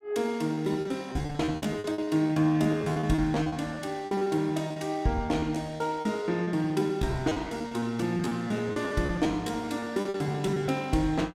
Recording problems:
packet loss; 18% of the sound replaced, filled with repeated pitch periods

